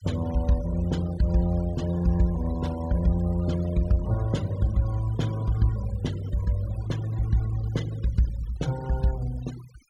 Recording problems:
noise reduction artefacts; signal-to-artefact ratio 20 dB

